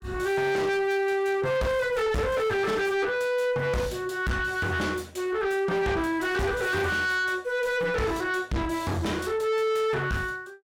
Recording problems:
distorted audio; soft clipping, signal-to-distortion ratio 6 dB

